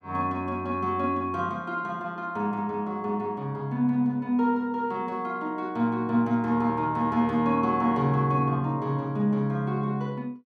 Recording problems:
none

